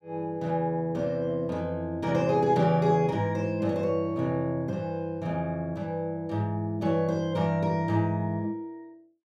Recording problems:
none

